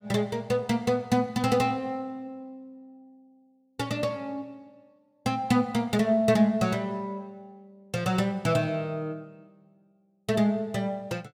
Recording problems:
none

